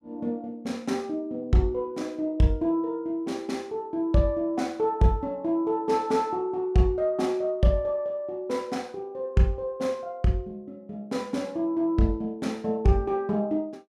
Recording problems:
none

